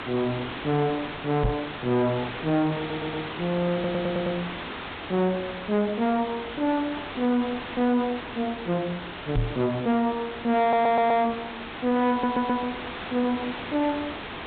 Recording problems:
treble missing; nothing above 4 kHz
distortion; soft clipping, signal-to-distortion ratio 10 dB
background hiss; SNR 9 dB
microphone thump; at 1.5 s and at 9.5 s; peak +4 dB vs average level
audio stuttering; 4 times, first at 3 s

